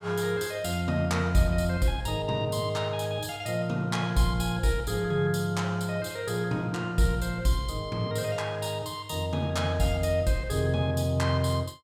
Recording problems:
none

